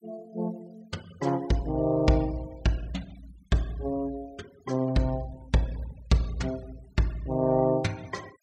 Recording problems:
noise reduction artefacts; signal-to-artefact ratio 23 dB

